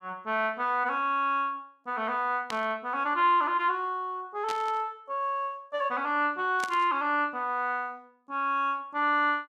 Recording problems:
burst of static; at 2.5 s, at 4.5 s and at 6.5 s; peak -4 dB vs average level

